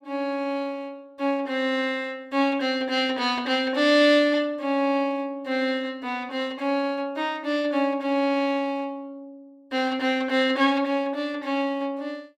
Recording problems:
none

